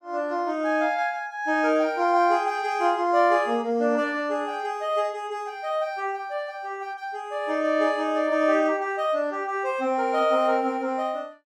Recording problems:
none

